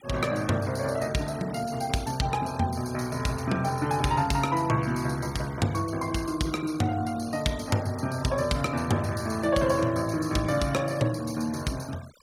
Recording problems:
noise reduction artefacts; signal-to-artefact ratio 19 dB

